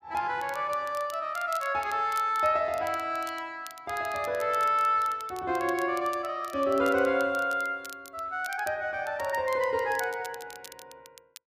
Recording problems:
crackling; vinyl, SNR 20 dB

